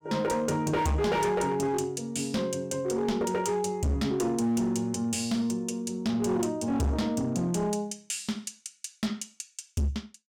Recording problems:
distortion; hard clipping, signal-to-distortion ratio 8 dB

